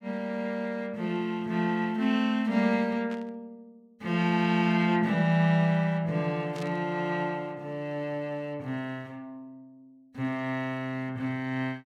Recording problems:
burst of static; at 3 s and at 6.5 s; peak -13 dB vs average level

